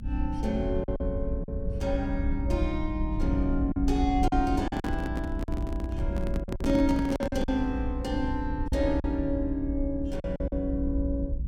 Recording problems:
low-frequency rumble; below 78 Hz, SNR 3 dB
packet loss; 6% of the sound replaced, filled with silence
handling noise; from 4.5 to 7.5 s; peak +2 dB vs average level

